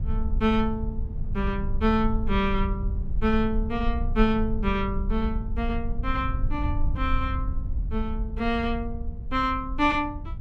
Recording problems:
rumble; below 68 Hz, SNR 4 dB

